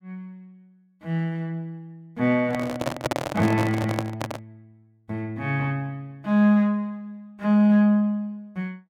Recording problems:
microphone handling noise; from 2.5 to 4.5 s; peak +2 dB vs average level

